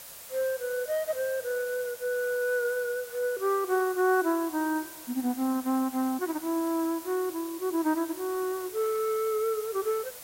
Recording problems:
background hiss; SNR 13 dB

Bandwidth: 16 kHz